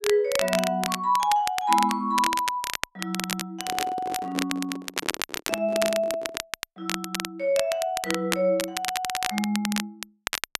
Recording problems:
crackle; vinyl, SNR 5 dB
handling noise; from 3.5 to 6.5 s; peak -5 dB vs average level

